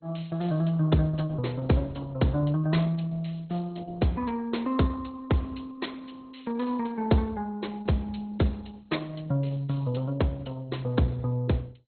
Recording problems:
codec artefacts; Opus, then MP2, log-spectral distance 4 dB, nothing above 4.2 kHz

